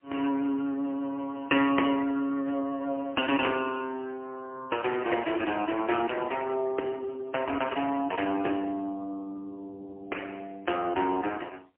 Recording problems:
telephone audio; 240 Hz to 3.1 kHz, AMR-NB, then MP3

